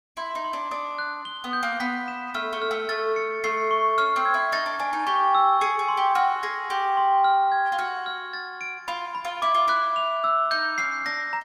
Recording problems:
none

